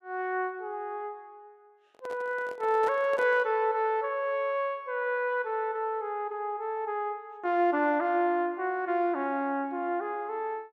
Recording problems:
handling noise; from 2 to 3.5 s; peak -6 dB vs average level

